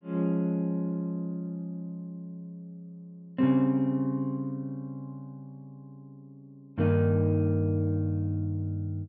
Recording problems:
none

